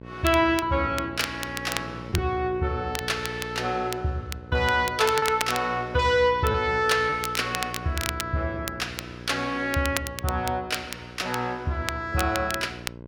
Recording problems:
hum; 60 Hz, harmonics up to 1.1 kHz, SNR 15 dB
crackle; vinyl, SNR 10 dB
packet loss; 1.6% of the sound replaced, filled with repeated pitch periods

